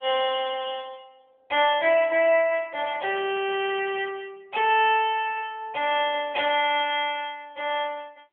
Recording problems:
phone line; 340 Hz to 3.4 kHz, AMR-NB

